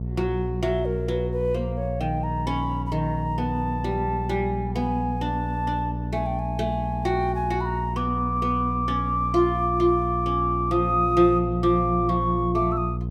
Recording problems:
hum; 60 Hz, harmonics up to 480 Hz, SNR 5 dB

